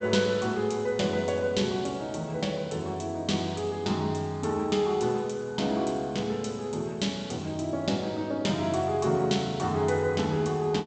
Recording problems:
low-pass filter; nothing above 8 kHz

